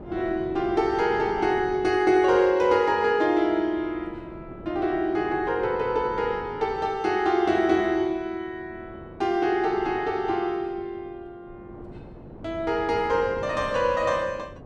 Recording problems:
wind noise; below 460 Hz, SNR 19 dB

